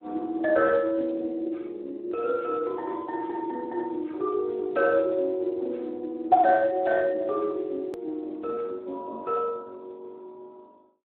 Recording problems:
telephone audio; 240 Hz to 2.6 kHz, Speex
edit click; at 8 s

